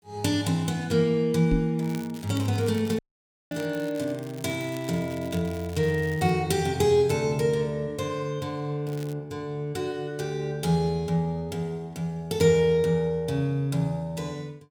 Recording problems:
knock on the microphone; at 1.5 s; peak +3 dB vs average level
crackle; from 2 to 6.5 s and at 9 s; loose cable, SNR 21 dB
dropout; at 3 s for 0.5 s

